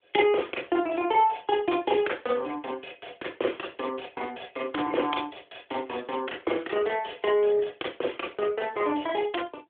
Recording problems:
telephone audio; 280 Hz to 3.5 kHz, AMR-NB

